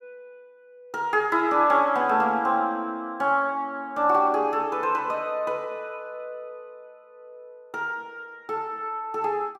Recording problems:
none

